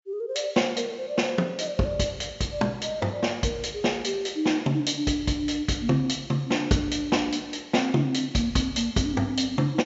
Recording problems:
low-pass filter; nothing above 8 kHz

